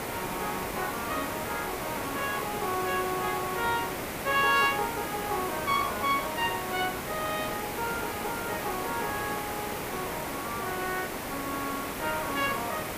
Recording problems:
background hiss; SNR 2 dB

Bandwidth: 15 kHz